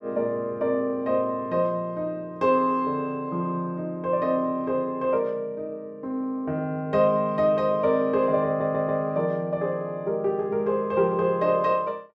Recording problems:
audio stuttering; at 8.5 s

